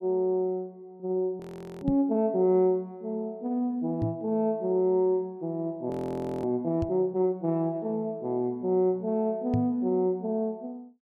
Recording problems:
audio freezing; at 1.5 s and at 6 s for 0.5 s
microphone thump; 4 times, first at 2 s; peak +3 dB vs average level

